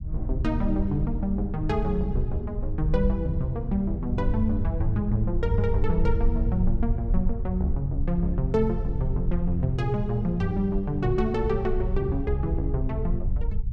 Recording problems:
rumble; below 68 Hz, SNR 3 dB

